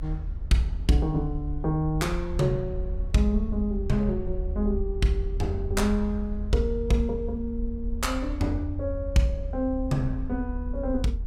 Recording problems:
rumble; below 74 Hz, strongest tone 42 Hz, SNR 5 dB

